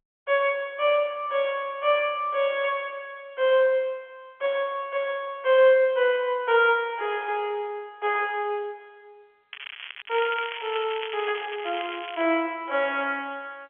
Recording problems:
telephone audio; 370 Hz to 3.3 kHz, G.711
crackle; from 9.5 to 12 s; loose cable, SNR 12 dB

